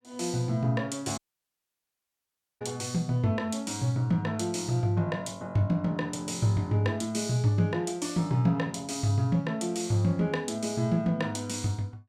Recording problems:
audio cutting out; at 1 s for 1.5 s

